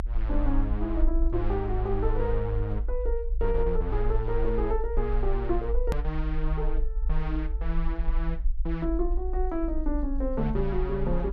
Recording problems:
rumble; below 50 Hz, strongest tone 26 Hz, SNR 0 dB
click at an edit; at 6 s

